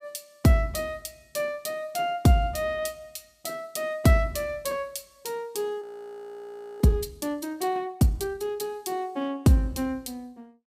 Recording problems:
audio freezing; at 6 s for 1 s

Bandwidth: 15.5 kHz